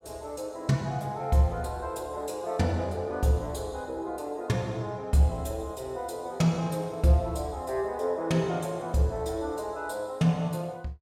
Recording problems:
none

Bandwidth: 17 kHz